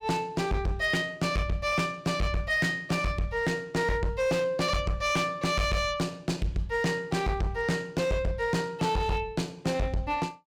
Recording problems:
distorted audio; hard clipping, signal-to-distortion ratio 8 dB

